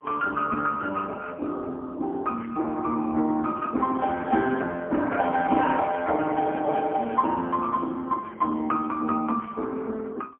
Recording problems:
phone line; 190 Hz to 2.1 kHz, AMR-NB, then MP3

